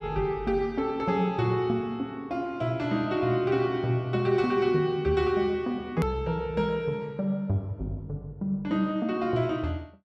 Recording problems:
hard cut with a click; at 6 s

